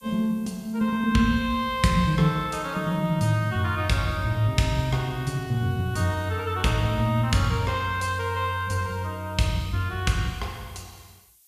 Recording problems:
background hiss; slope +5 dB per octave, SNR 28 dB

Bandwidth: 14.5 kHz